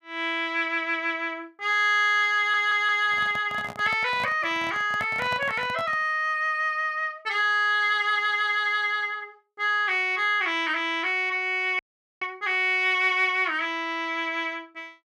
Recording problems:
stutter; at 2.5 s
handling noise; from 2.5 to 6 s; peak -8 dB vs average level
audio cutting out; at 12 s

